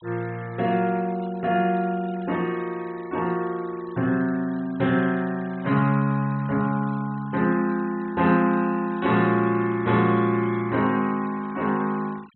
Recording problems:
low-pass filter; nothing above 4 kHz
denoising artefacts; signal-to-artefact ratio 24 dB

